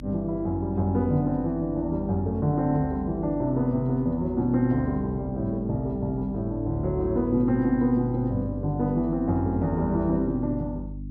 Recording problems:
hum; 50 Hz, harmonics up to 300 Hz, SNR 12 dB

